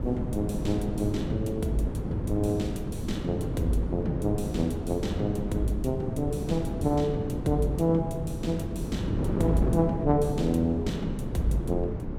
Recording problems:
wind on the microphone; below 300 Hz, SNR 3 dB

